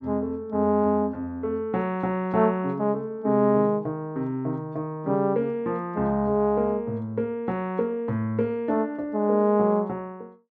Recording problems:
none

